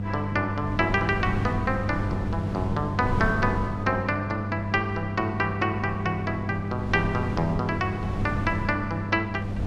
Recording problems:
hum; 50 Hz, harmonics up to 700 Hz, SNR 4 dB
wind noise; below 230 Hz, SNR 7 dB

